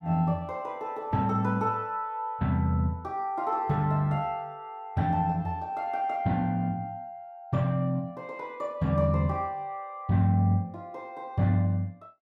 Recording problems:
none

